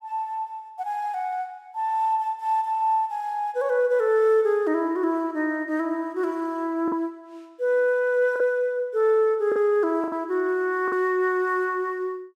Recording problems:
lost packets; 2% of the sound replaced, filled with the last packet

